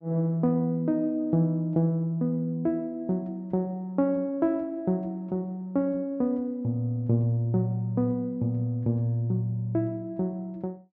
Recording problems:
none

